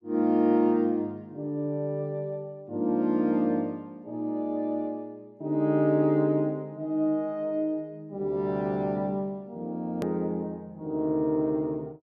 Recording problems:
edit click; at 10 s

